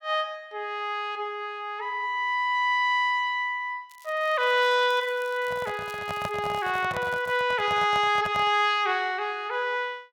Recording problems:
crackle; from 4 to 7 s and at 7 s; loose cable, SNR 27 dB
microphone handling noise; from 5.5 to 8.5 s; peak -4 dB vs average level

